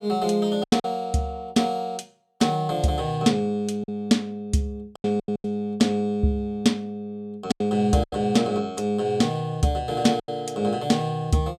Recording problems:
packet loss; 6% of the sound replaced, filled with silence

